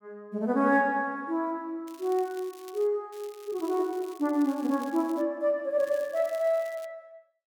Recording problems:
crackle; from 2 to 3 s, from 3 to 5 s and from 6 to 7 s; loose cable, SNR 23 dB

